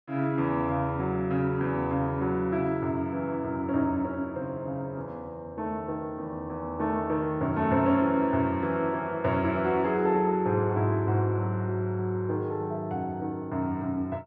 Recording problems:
none

